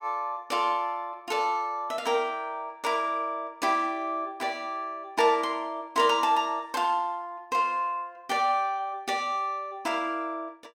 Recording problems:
none

